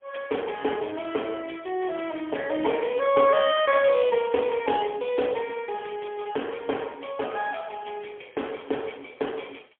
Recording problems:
phone line; 280 Hz to 3.4 kHz, AMR-NB, then MP3

